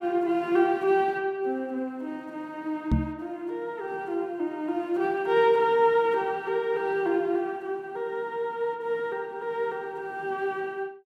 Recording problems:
knock on the microphone; at 3 s; peak +7 dB vs average level

